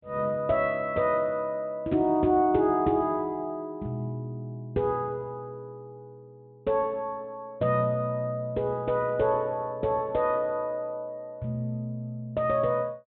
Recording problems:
treble cut off; nothing above 4 kHz

